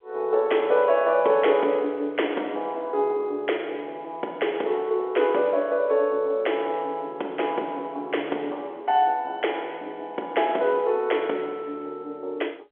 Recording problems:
phone line; 300 Hz to 3.4 kHz, G.711

